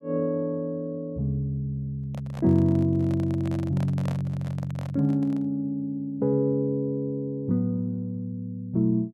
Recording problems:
handling noise; from 2 to 5.5 s; peak -6 dB vs average level

